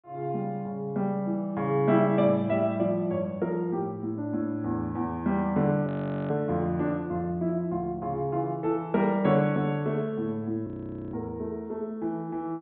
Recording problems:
treble missing; nothing above 4 kHz
frozen audio; at 6 s and at 11 s

